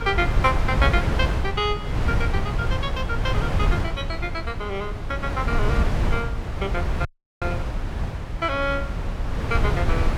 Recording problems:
wind noise; below 160 Hz, SNR -2 dB
audio cutting out; at 7 s

